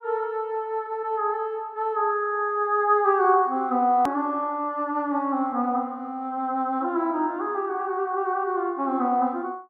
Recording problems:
edit click; at 4 s

